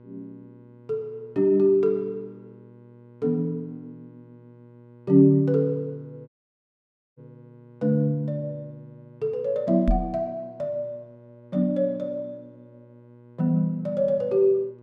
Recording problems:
hum; 60 Hz, harmonics up to 1.1 kHz, SNR 25 dB
audio cutting out; at 6.5 s for 1 s
knock on the microphone; at 10 s; peak +3 dB vs average level

